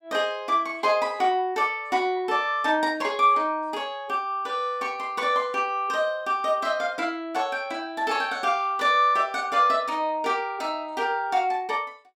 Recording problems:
none

